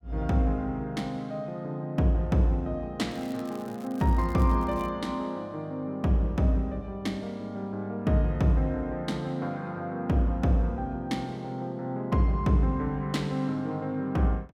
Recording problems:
crackling; from 3 to 5 s; loose cable, SNR 25 dB

